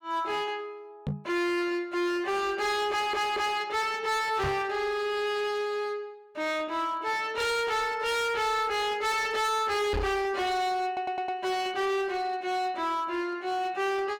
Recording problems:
distorted audio; hard clipping, signal-to-distortion ratio 7 dB
knock on the microphone; at 1 s, at 4.5 s and at 10 s; peak +2 dB vs average level
stutter; at 3 s and at 11 s

